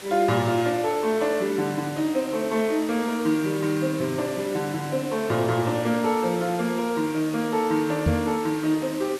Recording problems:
background hiss; SNR 15 dB
microphone bump; at 8 s; peak +6 dB vs average level

